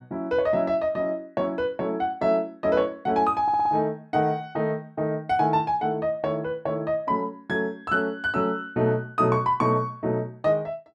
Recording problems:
stutter; at 3.5 s

